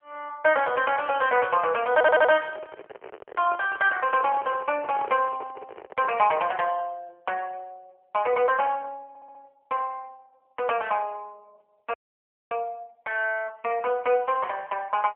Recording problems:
phone line; 340 Hz to 3.1 kHz, AMR-NB
stutter; at 2 s and at 9 s
microphone handling noise; from 2.5 to 6 s; peak -10 dB vs average level
frozen audio; at 12 s for 0.5 s

